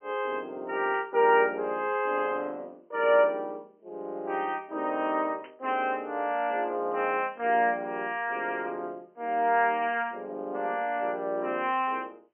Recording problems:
telephone audio; 260 Hz to 3.1 kHz, G.711
burst of static; at 1 s and at 5.5 s; peak -16 dB vs average level

